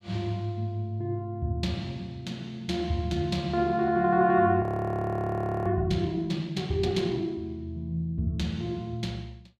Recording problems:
frozen audio; at 4.5 s for 1 s

